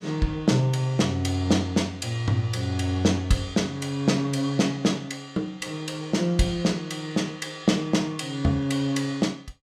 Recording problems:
none

